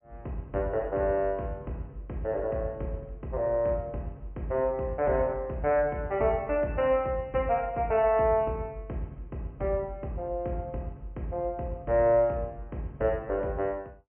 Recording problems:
low-pass filter; nothing above 3 kHz

